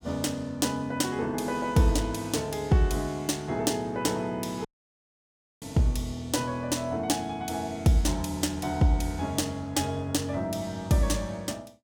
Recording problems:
dropout; at 4.5 s for 1 s

